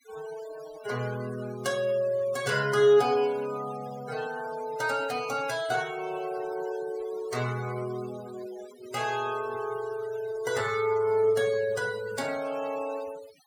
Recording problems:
denoising artefacts; signal-to-artefact ratio 16 dB

